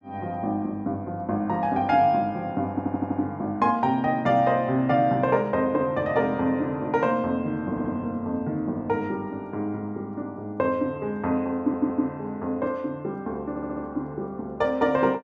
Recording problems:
stutter; 4 times, first at 2.5 s

